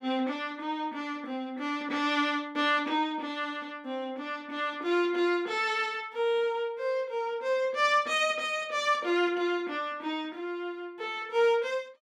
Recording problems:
none

